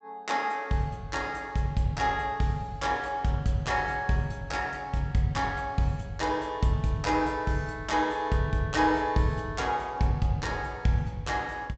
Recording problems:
treble missing; nothing above 8 kHz

